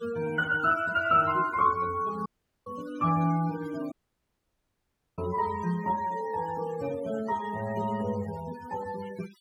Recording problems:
noise reduction artefacts; signal-to-artefact ratio 17 dB
audio cutting out; at 2.5 s and at 4 s for 1.5 s

